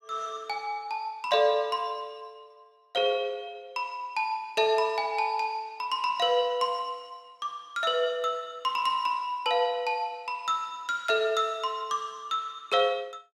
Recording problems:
none

